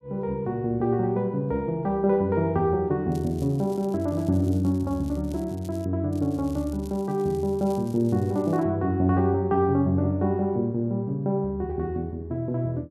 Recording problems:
crackle; from 3 to 6 s and from 6 to 8.5 s; loose cable, SNR 26 dB

